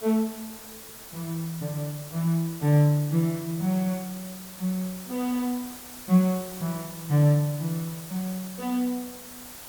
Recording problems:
hiss; slope -2 dB per octave, SNR 14 dB

